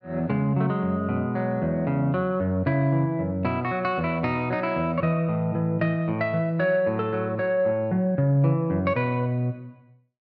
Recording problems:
none

